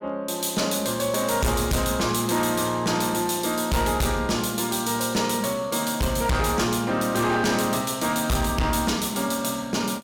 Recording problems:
distortion; hard clipping, uneven, signal-to-distortion ratio 6 dB

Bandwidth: 17 kHz